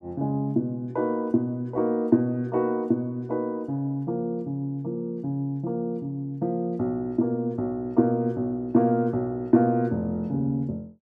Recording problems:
none

